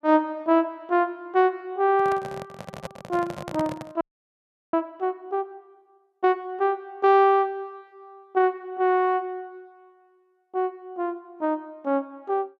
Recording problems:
microphone handling noise; from 2 to 4 s; peak -4 dB vs average level
frozen audio; at 4 s for 0.5 s

